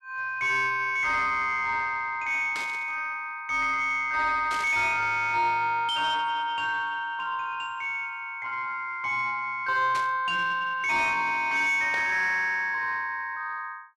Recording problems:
distorted audio; soft clipping, signal-to-distortion ratio 11 dB
static burst; 4 times, first at 2.5 s; peak -7 dB vs average level

